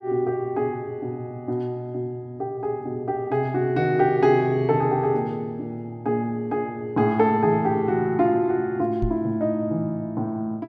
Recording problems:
microphone bump; at 9 s; peak 0 dB vs average level

